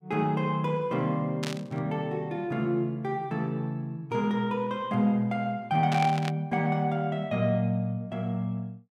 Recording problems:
burst of static; at 1.5 s and at 6 s; peak -2 dB vs average level

